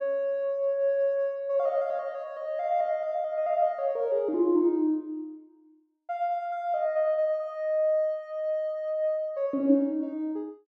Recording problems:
none

